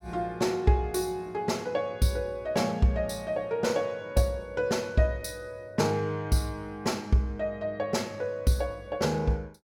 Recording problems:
none

